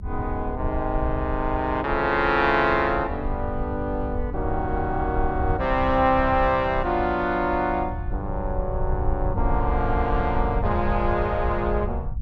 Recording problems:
rumble; below 84 Hz, SNR 7 dB

